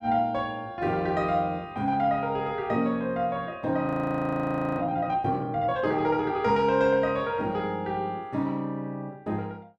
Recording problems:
audio freezing; at 4 s for 1 s

